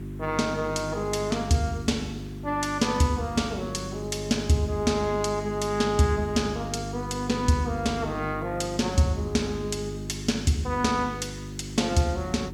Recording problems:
hum; 50 Hz, harmonics up to 400 Hz, SNR 9 dB
background hiss; SNR 26 dB

